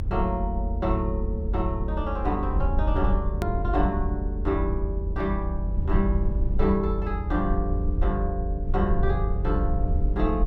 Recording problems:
hum; 60 Hz, harmonics up to 540 Hz, SNR 15 dB
low-frequency rumble; below 74 Hz, SNR -1 dB
hard cut with a click; at 3.5 s

